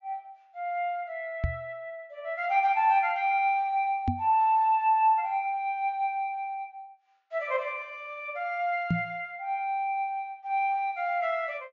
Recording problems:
treble cut off; nothing above 7.2 kHz
microphone thump; at 1.5 s, at 4 s and at 9 s; peak +4 dB vs average level

